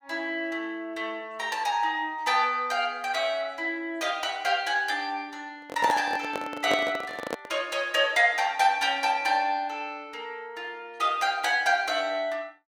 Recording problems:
microphone handling noise; from 5.5 to 7.5 s; peak +1 dB vs average level

